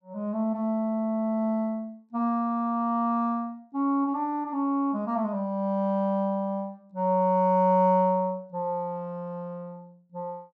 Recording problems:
none

